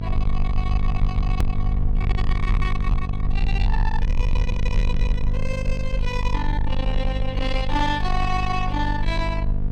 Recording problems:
distorted audio; soft clipping, signal-to-distortion ratio 6 dB
electrical hum; 50 Hz, harmonics up to 700 Hz, SNR 1 dB
rumble; below 48 Hz, strongest tone 22 Hz, SNR -1 dB
click at an edit; at 1.5 s

